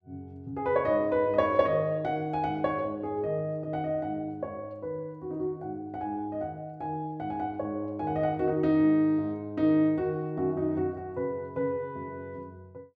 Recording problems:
none

